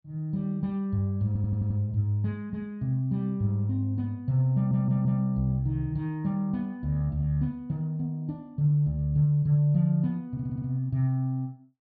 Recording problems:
audio stuttering; at 1.5 s, at 4.5 s and at 10 s

